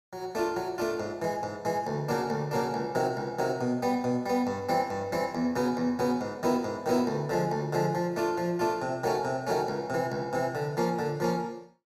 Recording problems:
none

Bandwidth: 16.5 kHz